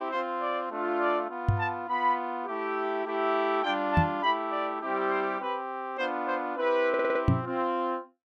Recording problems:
knock on the microphone; at 1.5 s, at 4 s and at 7.5 s; peak +9 dB vs average level
stutter; at 7 s

